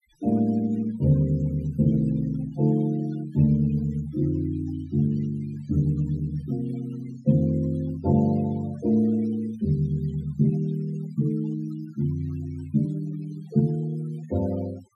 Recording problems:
denoising artefacts; signal-to-artefact ratio 23 dB

